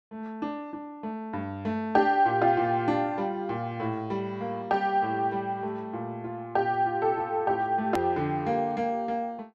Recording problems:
click at an edit; at 8 s

